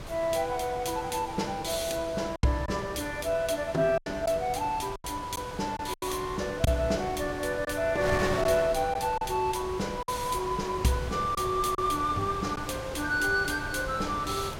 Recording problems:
wind noise; below 1.4 kHz, SNR 10 dB
lost packets; 4% of the sound replaced, filled with silence

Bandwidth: 16.5 kHz